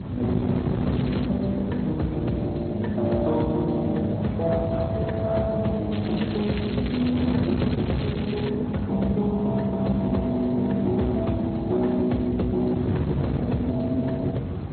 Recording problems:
lossy compression; Speex, then MP2, log-spectral distance 4 dB, nothing above 4.2 kHz
distorted audio; soft clipping, signal-to-distortion ratio 11 dB
electrical hum; 50 Hz, harmonics up to 550 Hz, SNR 15 dB
wind noise; below 300 Hz, SNR 5 dB
crackle; at 1 s and from 6 to 8.5 s; loose cable, SNR 13 dB

